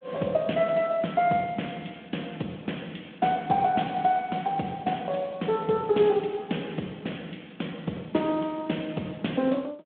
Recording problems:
telephone audio; 220 Hz to 3.5 kHz, Speex

